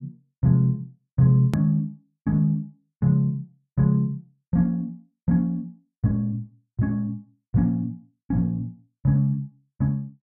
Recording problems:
hard cut with a click; at 1.5 s

